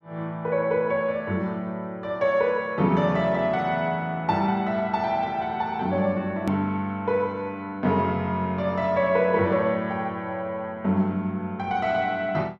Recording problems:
edit click; at 6.5 s

